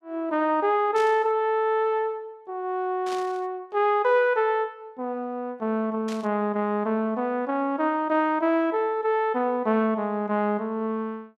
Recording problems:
burst of static; at 1 s, at 3 s and at 6 s; peak -10 dB vs average level

